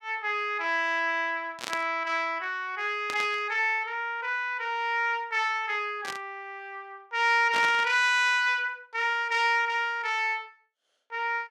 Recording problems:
burst of static; 4 times, first at 1.5 s; peak -3 dB vs average level

